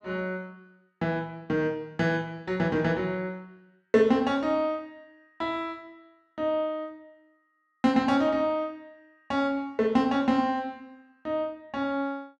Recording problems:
none

